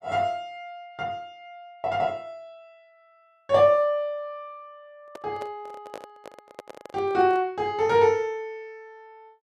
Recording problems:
handling noise; from 5 to 7.5 s; peak -9 dB vs average level

